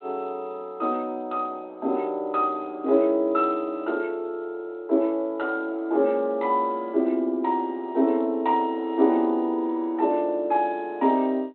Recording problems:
telephone audio; 220 Hz to 3.8 kHz, G.726

